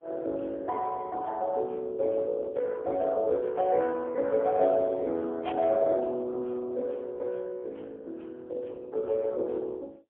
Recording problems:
phone line; 280 Hz to 2.7 kHz, AMR-NB, then MP3
static burst; at 5.5 s; peak -4 dB vs average level

